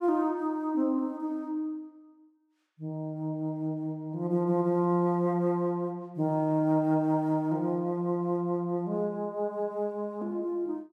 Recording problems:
none

